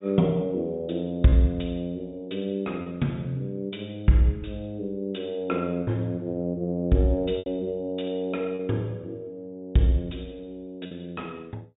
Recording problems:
low-pass filter; nothing above 4 kHz
packet loss; 2% of the sound replaced, filled with repeated pitch periods

